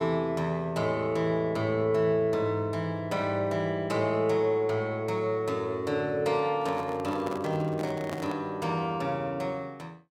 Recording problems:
microphone handling noise; from 6.5 to 8.5 s; peak -5 dB vs average level

